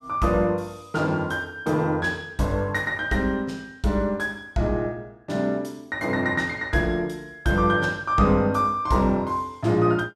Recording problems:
none

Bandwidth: 14.5 kHz